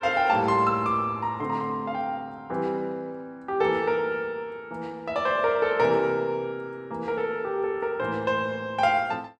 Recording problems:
none

